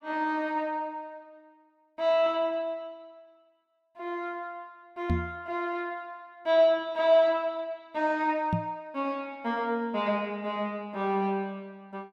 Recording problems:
microphone bump; at 5 s and at 8.5 s; peak +4 dB vs average level

